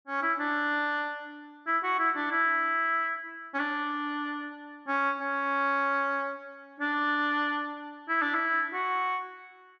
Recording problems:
none

